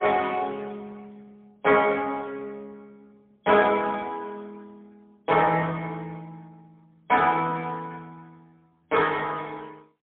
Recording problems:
phone line; 170 Hz to 3.3 kHz, AMR-NB, then MP3

